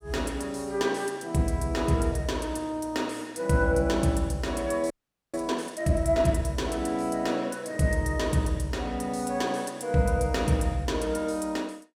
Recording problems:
audio freezing; at 5 s

